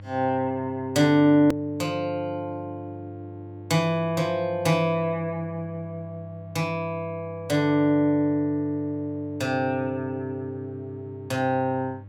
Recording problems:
hum; 50 Hz, harmonics up to 600 Hz, SNR 17 dB
edit click; at 1.5 s

